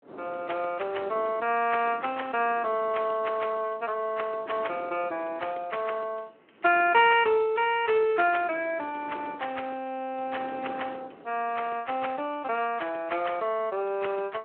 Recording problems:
telephone audio; 280 Hz to 3.2 kHz, Speex
wind noise; below 690 Hz, SNR 20 dB

